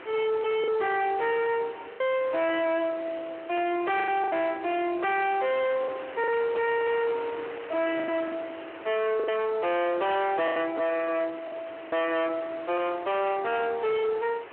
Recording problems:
telephone audio; 260 Hz to 3.2 kHz, Speex
distortion; hard clipping, signal-to-distortion ratio 5 dB
background hiss; SNR 20 dB
wind on the microphone; below 2 kHz, SNR 18 dB
packet loss; 5% of the sound replaced, filled with the last packet

